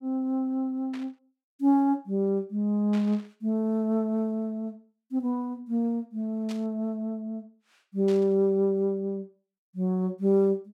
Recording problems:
static burst; 4 times, first at 1 s; peak -11 dB vs average level

